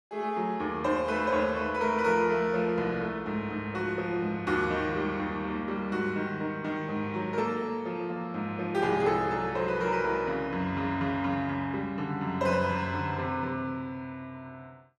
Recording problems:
none

